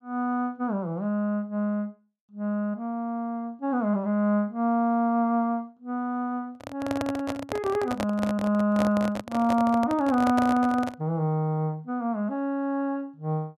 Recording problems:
microphone handling noise; from 6.5 to 11 s; peak 0 dB vs average level

